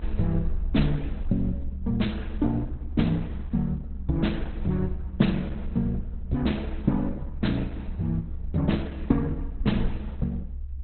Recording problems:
codec artefacts; Opus, log-spectral distance 2 dB, nothing above 4.1 kHz
low-frequency rumble; below 68 Hz, SNR 7 dB

